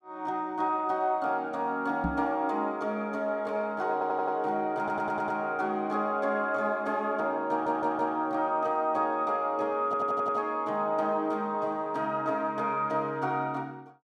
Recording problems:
microphone bump; at 2 s; peak +1 dB vs average level
audio stuttering; 4 times, first at 4 s

